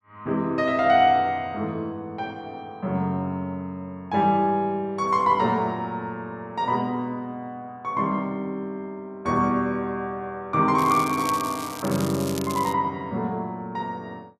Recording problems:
crackling; from 11 to 13 s; loose cable, SNR 12 dB

